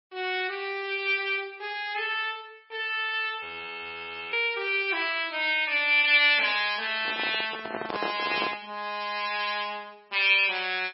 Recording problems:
codec artefacts; MP3, log-spectral distance 4 dB, nothing above 5.3 kHz
audio freezing; at 3.5 s for 1 s
microphone handling noise; from 7 to 8.5 s; peak -2 dB vs average level

